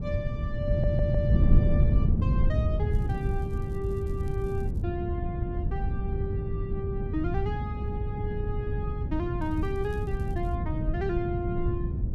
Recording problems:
wind noise; below 130 Hz, SNR -6 dB
audio stuttering; at 0.5 s
crackle; from 3 to 5 s and from 9.5 to 11 s; loose cable, SNR 27 dB

